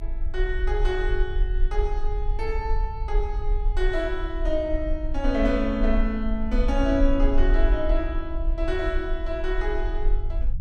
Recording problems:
low-frequency rumble; below 42 Hz, strongest tone 32 Hz, SNR 0 dB

